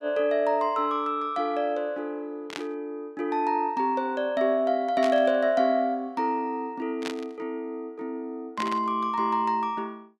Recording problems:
static burst; 4 times, first at 2.5 s; peak -2 dB vs average level

